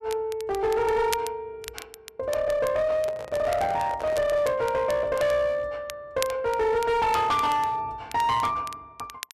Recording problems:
distortion; hard clipping, uneven, signal-to-distortion ratio 10 dB
crackling; vinyl, SNR 17 dB
handling noise; from 3 to 4.5 s; peak -8 dB vs average level

